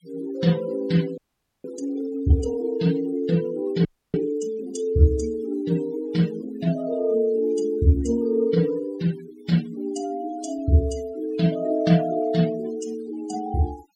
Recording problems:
noise reduction artefacts; signal-to-artefact ratio 18 dB
audio freezing; at 1 s and at 4 s

